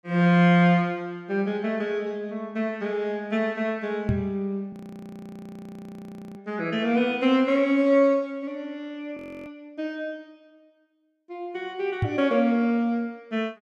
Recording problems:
microphone thump; at 4 s and at 12 s; peak +3 dB vs average level
audio freezing; at 4.5 s for 1.5 s and at 9 s

